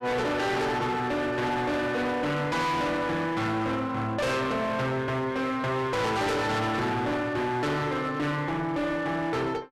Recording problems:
distorted audio; hard clipping, uneven, signal-to-distortion ratio 6 dB

